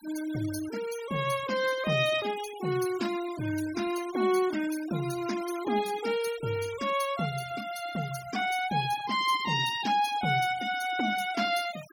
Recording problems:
denoising artefacts; signal-to-artefact ratio 15 dB

